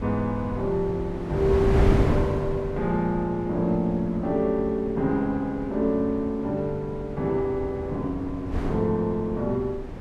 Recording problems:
wind noise; below 320 Hz, SNR 6 dB

